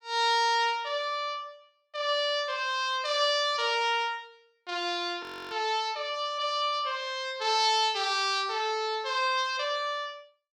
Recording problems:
frozen audio; at 5 s

